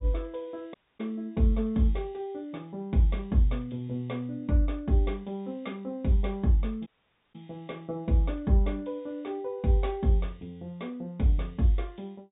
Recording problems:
low-pass filter; nothing above 4 kHz
dropout; at 0.5 s and at 7 s

